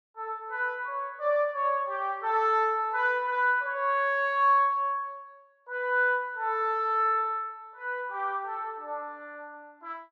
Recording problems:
none

